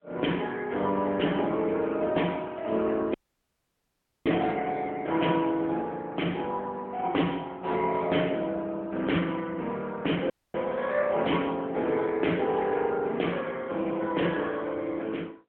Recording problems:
telephone audio; 220 Hz to 3.5 kHz, AMR-NB
audio cutting out; at 3 s for 1 s and at 10 s

